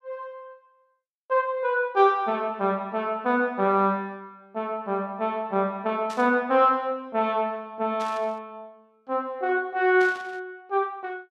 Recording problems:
static burst; at 6 s, at 8 s and at 10 s; peak -12 dB vs average level

